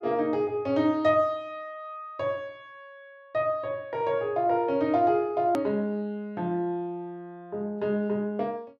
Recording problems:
hard cut with a click; at 5.5 s

